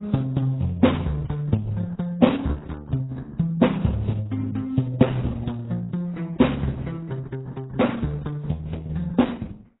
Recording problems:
codec artefacts; Opus, then AAC, log-spectral distance 3 dB, nothing above 3.8 kHz

